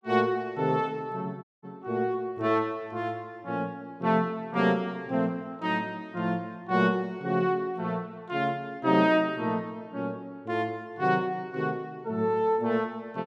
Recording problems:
audio cutting out; at 1.5 s

